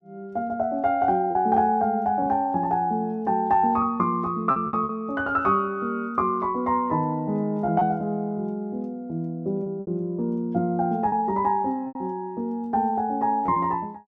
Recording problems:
lost packets; 4% of the sound replaced, filled with repeated pitch periods

